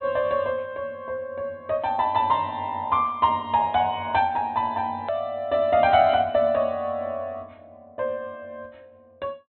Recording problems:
treble missing; nothing above 4.1 kHz
hard cut with a click; at 5 s

